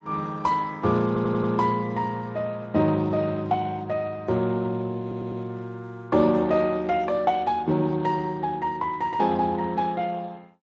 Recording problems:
lossy codec; Speex, log-spectral distance 3 dB, nothing above 7.3 kHz
stutter; at 1 s and at 5 s

